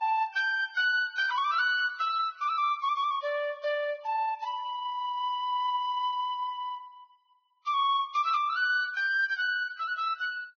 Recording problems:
lossy codec; Vorbis, log-spectral distance 2 dB

